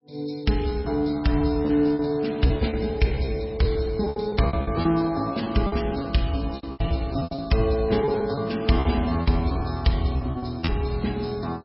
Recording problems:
lossy codec; MP3, log-spectral distance 5 dB, nothing above 5.5 kHz
packet loss; 15% of the sound replaced, filled with repeated pitch periods

